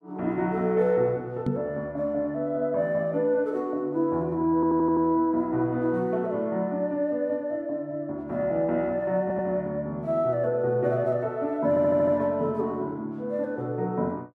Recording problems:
microphone thump; at 1.5 s; peak +3 dB vs average level
audio stuttering; at 4.5 s, at 9 s and at 12 s

